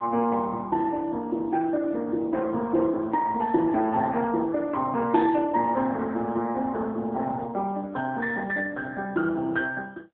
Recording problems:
telephone audio; 190 Hz to 2.1 kHz, AMR-NB

